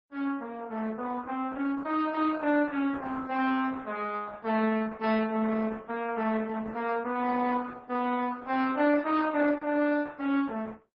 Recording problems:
lossy codec; MP3, then Opus, log-spectral distance 3 dB

